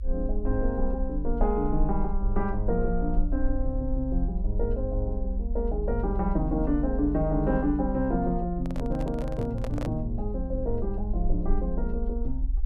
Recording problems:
rumble; below 58 Hz, SNR 3 dB
microphone handling noise; from 8.5 to 10 s; peak -3 dB vs average level

